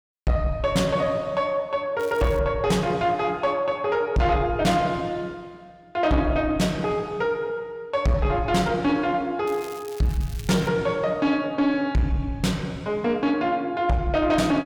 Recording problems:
distortion; soft clipping, signal-to-distortion ratio 11 dB
crackle; at 2 s and from 9.5 to 11 s; loose cable, SNR 21 dB

